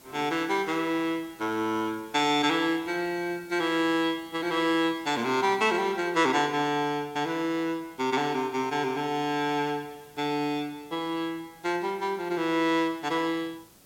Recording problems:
background hiss; SNR 26 dB

